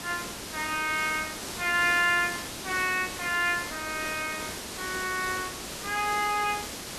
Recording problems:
hiss; slope -2 dB per octave, SNR 7 dB

